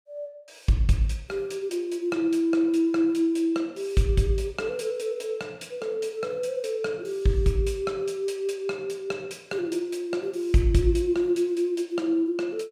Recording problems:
none

